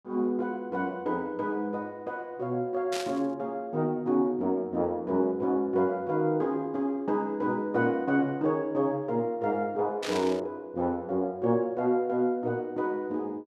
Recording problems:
static burst; at 3 s and at 10 s; peak -3 dB vs average level

